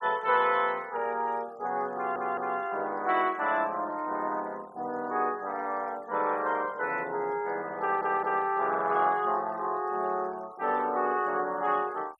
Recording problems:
noise reduction artefacts; signal-to-artefact ratio 25 dB
stutter; at 2 s and at 8 s

